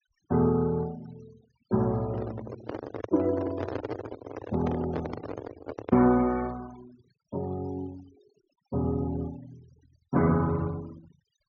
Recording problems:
low-pass filter; nothing above 6.7 kHz
noise reduction artefacts; signal-to-artefact ratio 21 dB
microphone handling noise; from 2 to 6 s; peak -2 dB vs average level

